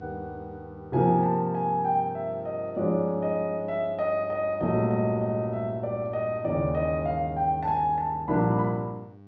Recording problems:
hum; 50 Hz, harmonics up to 1.2 kHz, SNR 20 dB

